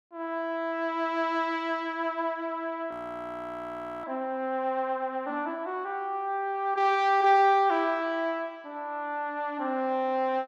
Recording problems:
audio freezing; at 3 s for 1 s

